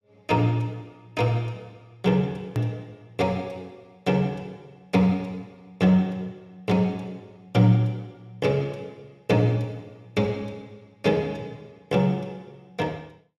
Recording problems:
click at an edit; at 2.5 s

